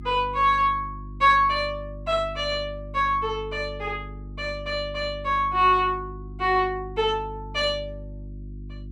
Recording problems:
hum; 50 Hz, harmonics up to 350 Hz, SNR 15 dB

